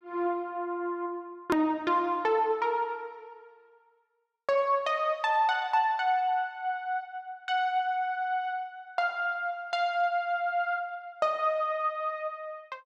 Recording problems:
edit click; at 1.5 s

